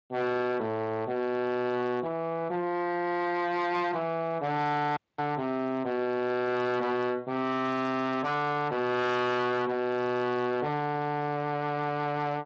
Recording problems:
codec artefacts; Speex, log-spectral distance 2 dB
distortion; soft clipping, signal-to-distortion ratio 6 dB
audio cutting out; at 5 s

